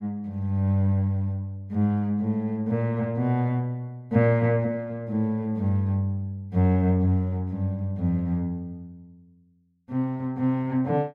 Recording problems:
none

